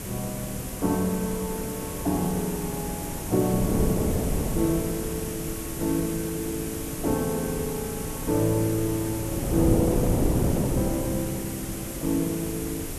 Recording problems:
hiss; SNR 7 dB
wind noise; below 370 Hz, SNR 2 dB

